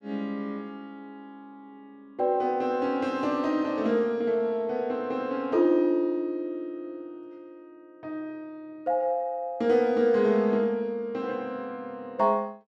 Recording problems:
none

